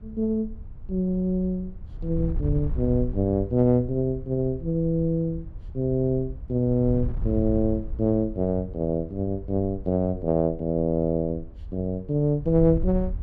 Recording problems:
wind noise; below 82 Hz, SNR 11 dB

